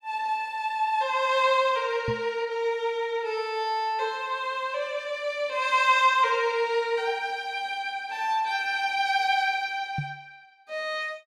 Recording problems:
microphone thump; at 2 s and at 10 s; peak -1 dB vs average level

